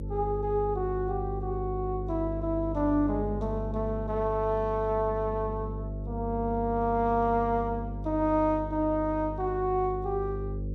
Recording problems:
hum; 50 Hz, harmonics up to 550 Hz, SNR 7 dB

